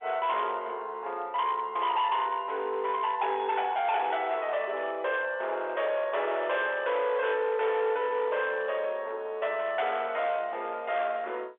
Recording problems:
telephone audio; 340 Hz to 3.7 kHz, G.711
distorted audio; hard clipping, signal-to-distortion ratio 11 dB

